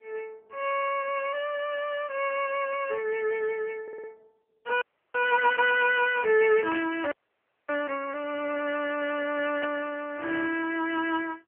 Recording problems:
telephone audio; 300 Hz to 2.9 kHz, AMR-NB
audio stuttering; at 4 s
audio freezing; at 5 s and at 7 s for 0.5 s
static burst; at 6.5 s and at 9.5 s; peak -2 dB vs average level

